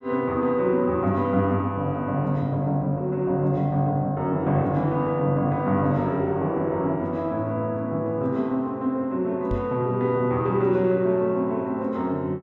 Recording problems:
microphone thump; at 9.5 s; peak -2 dB vs average level

